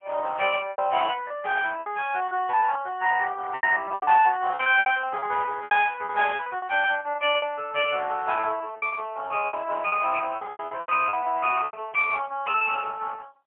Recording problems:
phone line; 370 Hz to 3.3 kHz, AMR-NB, then MP3
lost packets; 13% of the sound replaced, filled with repeated pitch periods
burst of static; at 12 s; peak -8 dB vs average level

